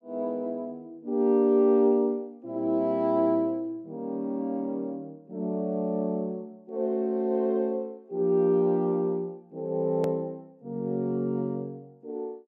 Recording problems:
click at an edit; at 10 s

